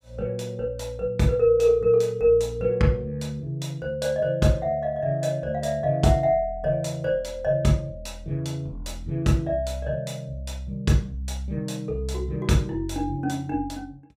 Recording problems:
none

